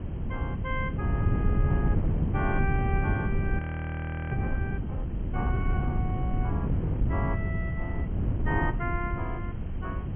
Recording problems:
low-pass filter; nothing above 3.2 kHz
background hiss; SNR 21 dB
wind on the microphone; below 160 Hz, SNR -6 dB
audio freezing; at 3.5 s for 0.5 s

